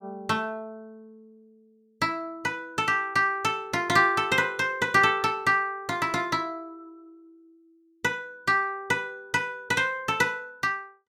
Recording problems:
none

